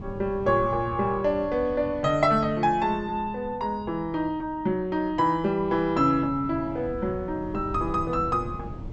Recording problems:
treble missing; nothing above 8 kHz
wind on the microphone; below 220 Hz, SNR 15 dB

